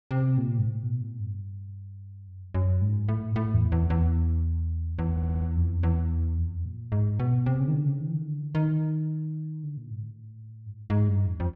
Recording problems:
audio stuttering; at 5 s

